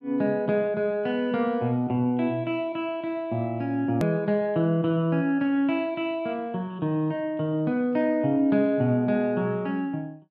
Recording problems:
treble missing; nothing above 7.1 kHz
click at an edit; at 4 s

